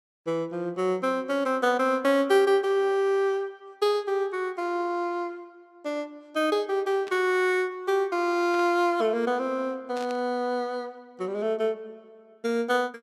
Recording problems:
burst of static; at 7 s, at 8.5 s and at 10 s; peak -12 dB vs average level

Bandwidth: 15 kHz